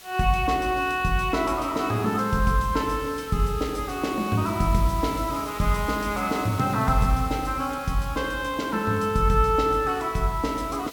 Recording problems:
background hiss; slope 0 dB per octave, SNR 18 dB

